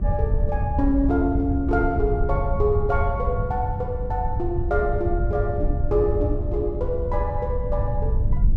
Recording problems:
electrical hum; 50 Hz, harmonics up to 600 Hz, SNR 14 dB
wind on the microphone; below 88 Hz, SNR 1 dB

